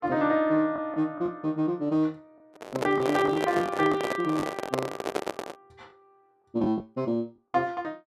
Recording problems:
packet loss; 6% of the sound replaced, filled with the last packet
handling noise; from 2.5 to 5.5 s; peak +3 dB vs average level

